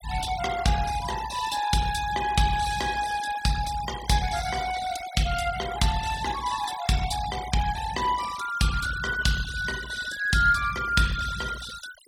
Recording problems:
noise reduction artefacts; signal-to-artefact ratio 12 dB

